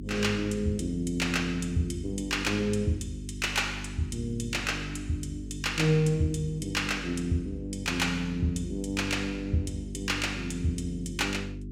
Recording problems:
hum; 50 Hz, harmonics up to 400 Hz, SNR 10 dB

